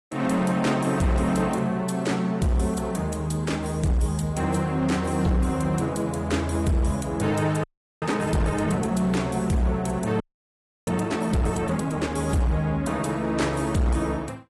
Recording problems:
codec artefacts; AAC, log-spectral distance 3 dB, nothing above 11.3 kHz
distortion; hard clipping, signal-to-distortion ratio 11 dB
audio freezing; at 7.5 s and at 10 s for 0.5 s

